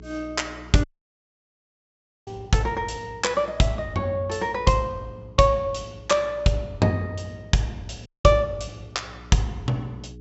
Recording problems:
treble missing; nothing above 7.6 kHz
mains hum; 60 Hz, harmonics up to 420 Hz, SNR 22 dB
audio cutting out; at 1 s for 1.5 s and at 8 s

